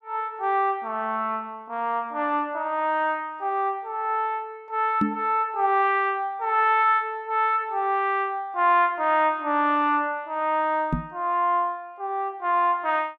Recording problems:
microphone thump; at 5 s and at 11 s; peak +3 dB vs average level

